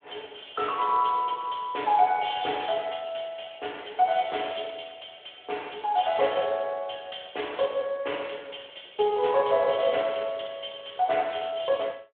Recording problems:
telephone audio; 340 Hz to 3.6 kHz, Speex

